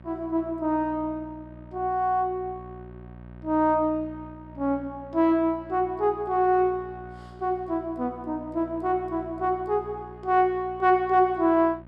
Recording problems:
hum; 60 Hz, harmonics up to 1.6 kHz, SNR 20 dB

